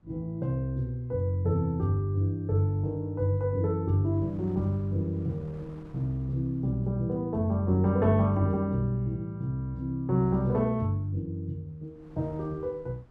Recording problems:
wind on the microphone; below 420 Hz, SNR 24 dB

